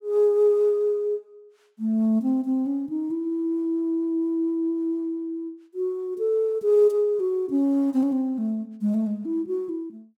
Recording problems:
none

